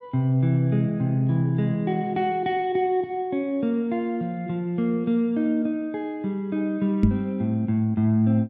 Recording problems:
microphone bump; at 7 s; peak +9 dB vs average level

